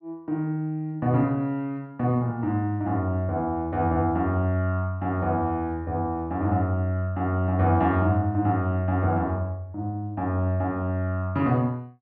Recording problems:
none

